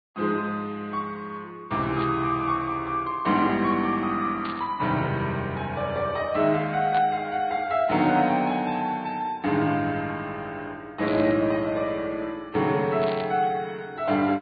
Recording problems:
treble cut off; nothing above 4.5 kHz
lossy compression; Vorbis, log-spectral distance 2 dB
static burst; 5 times, first at 2 s; peak -8 dB vs average level

